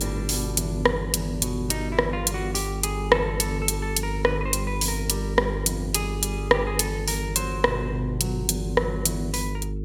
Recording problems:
electrical hum; 50 Hz, harmonics up to 450 Hz, SNR 5 dB

